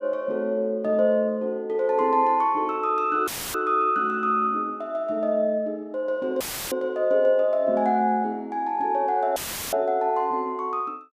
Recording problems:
dropout; at 3.5 s, at 6.5 s and at 9.5 s; filled with static

